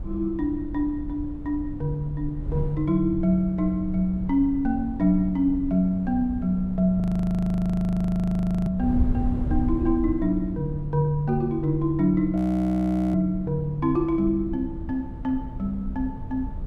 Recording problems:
wind noise; below 100 Hz, SNR 10 dB
frozen audio; at 7 s for 1.5 s and at 12 s for 1 s

